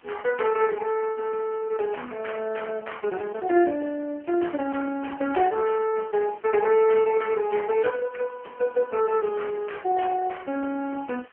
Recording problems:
telephone audio; 240 Hz to 3.1 kHz, AMR-NB
hiss; SNR 30 dB

